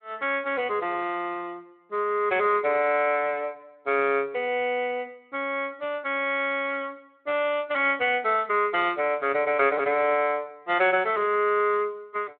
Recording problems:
telephone audio; 220 Hz to 3.6 kHz, Speex

